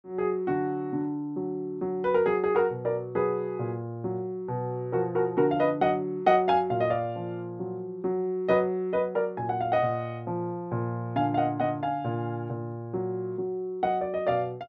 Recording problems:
none

